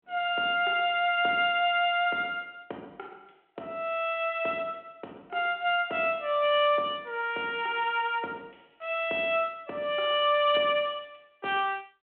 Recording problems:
telephone audio; 240 Hz to 3.3 kHz, G.726

